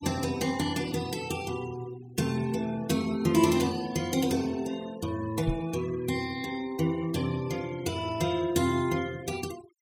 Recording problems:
denoising artefacts; signal-to-artefact ratio 17 dB
knock on the microphone; at 5.5 s; peak +2 dB vs average level

